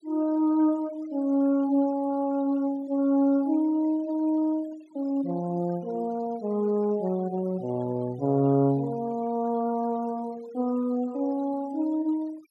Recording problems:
denoising artefacts; signal-to-artefact ratio 24 dB

